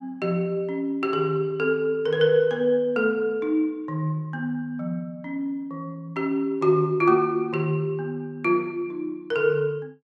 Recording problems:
none

